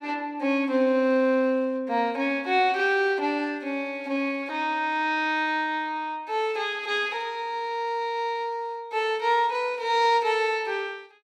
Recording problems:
none

